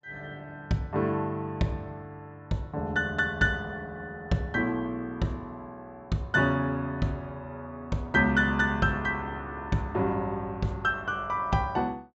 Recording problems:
low-pass filter; nothing above 7.6 kHz

